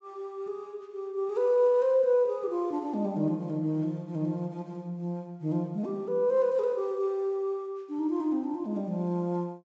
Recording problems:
low-pass filter; nothing above 8 kHz

